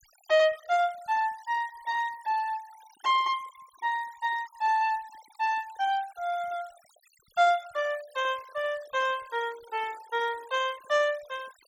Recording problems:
denoising artefacts; signal-to-artefact ratio 22 dB

